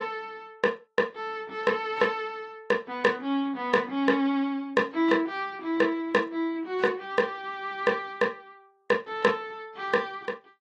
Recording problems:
lossy codec; AAC, log-spectral distance 2 dB, nothing above 11 kHz

